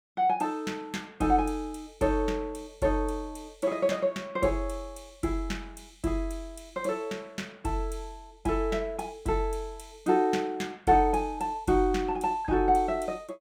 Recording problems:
none

